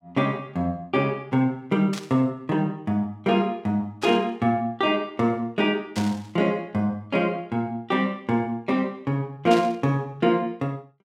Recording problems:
burst of static; 4 times, first at 2 s; peak -4 dB vs average level

